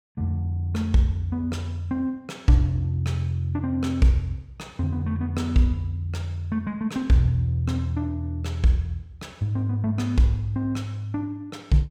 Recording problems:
none

